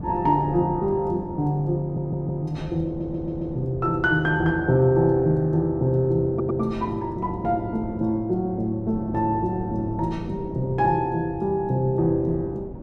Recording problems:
wind on the microphone; below 350 Hz, SNR 13 dB
stutter; at 2 s, at 3 s and at 6.5 s

